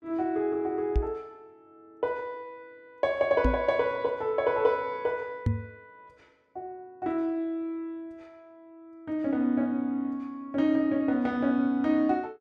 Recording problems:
microphone bump; at 1 s, at 3.5 s and at 5.5 s; peak +5 dB vs average level

